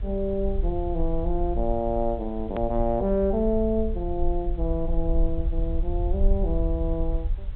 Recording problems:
treble cut off; nothing above 4 kHz
hiss; SNR 27 dB
rumble; below 52 Hz, SNR 3 dB
click at an edit; at 2.5 s

